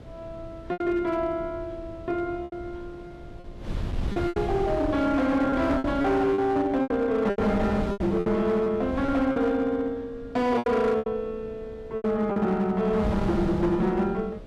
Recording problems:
distorted audio; hard clipping, uneven, signal-to-distortion ratio 12 dB
mains hum; 60 Hz, harmonics up to 660 Hz, SNR 25 dB
wind on the microphone; below 210 Hz, SNR 11 dB
packet loss; 8% of the sound replaced, filled with repeated pitch periods

